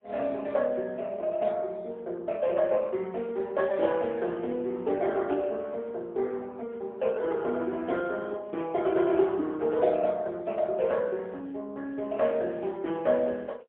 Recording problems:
telephone audio; 260 Hz to 3.5 kHz, AMR-NB, then MP3

